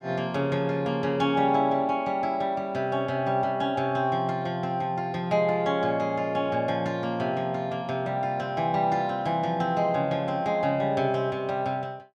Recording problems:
none

